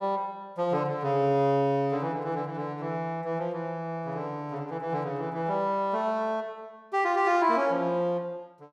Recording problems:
none

